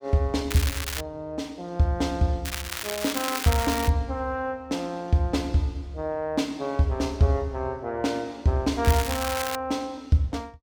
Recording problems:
crackle; at 0.5 s, from 2.5 to 4 s and at 9 s; loose cable, SNR 5 dB

